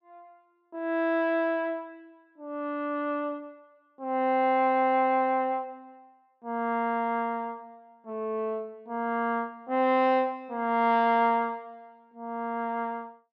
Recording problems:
none

